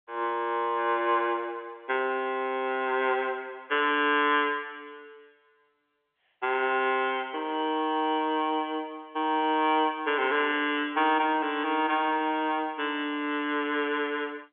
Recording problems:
phone line; 280 Hz to 3.5 kHz, G.711

